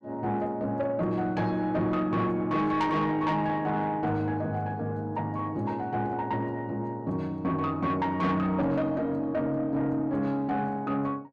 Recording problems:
distorted audio; soft clipping, signal-to-distortion ratio 12 dB

